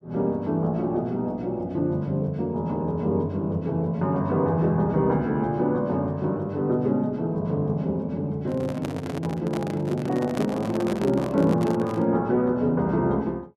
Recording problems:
microphone handling noise; from 8.5 to 12 s; peak -3 dB vs average level

